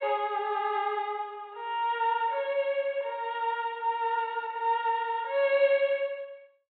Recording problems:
treble cut off; nothing above 4 kHz

